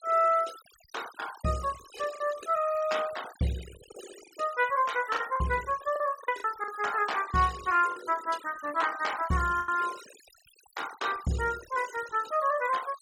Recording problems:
denoising artefacts; signal-to-artefact ratio 16 dB
packet loss; 4% of the sound replaced, filled with the last packet

